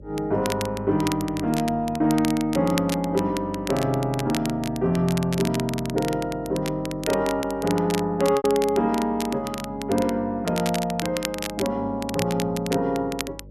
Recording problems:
hum; 50 Hz, harmonics up to 600 Hz, SNR 21 dB
crackling; vinyl, SNR 11 dB
lost packets; 1.2% of the sound replaced, filled with repeated pitch periods

